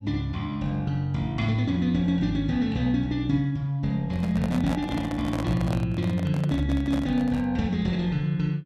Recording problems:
microphone handling noise; from 4 to 7.5 s; peak -3 dB vs average level

